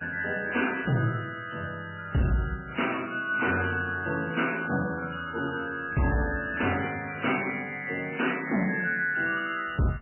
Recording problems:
lossy codec; MP3, log-spectral distance 7 dB, nothing above 2.4 kHz
distorted audio; hard clipping, signal-to-distortion ratio 10 dB

